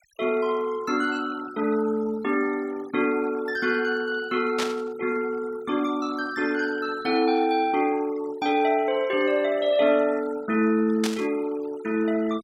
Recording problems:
denoising artefacts; signal-to-artefact ratio 20 dB
burst of static; at 4.5 s and at 11 s; peak -1 dB vs average level

